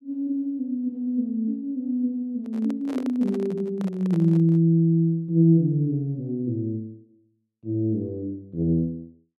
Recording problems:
handling noise; from 2.5 to 4.5 s; peak -7 dB vs average level

